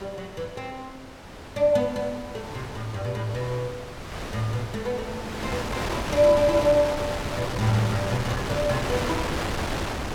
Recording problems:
wind noise; below 1.9 kHz, SNR 5 dB

